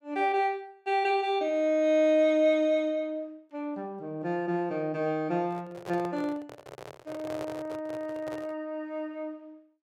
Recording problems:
handling noise; from 5.5 to 8.5 s; peak -6 dB vs average level

